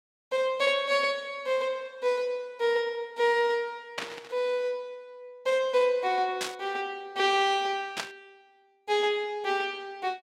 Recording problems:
burst of static; at 4 s, at 6.5 s and at 8 s; peak 0 dB vs average level

